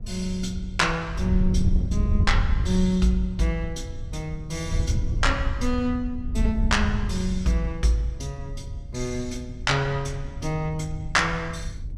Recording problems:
wind noise; below 90 Hz, SNR 3 dB

